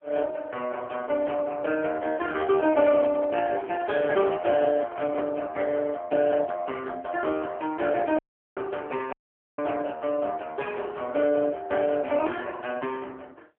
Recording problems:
telephone audio; 240 Hz to 3.3 kHz, AMR-NB
handling noise; from 2.5 to 5.5 s; peak -3 dB vs average level
dropout; at 8 s and at 9 s

